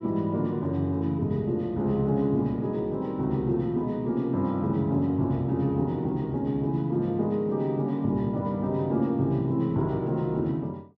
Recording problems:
none

